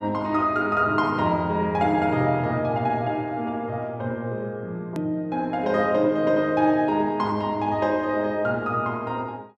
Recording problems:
edit click; at 5 s

